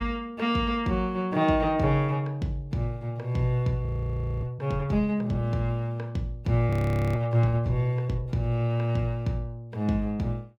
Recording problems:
audio freezing; at 4 s for 0.5 s and at 6.5 s

